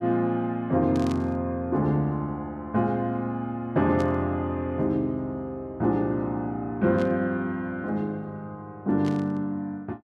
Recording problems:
burst of static; 4 times, first at 1 s; peak -11 dB vs average level

